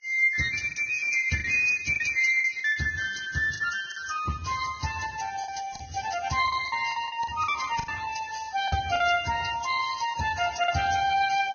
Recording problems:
lossy compression; Speex, then Vorbis, log-spectral distance 6 dB, nothing above 6.5 kHz
lost packets; 7% of the sound replaced, filled with the last packet

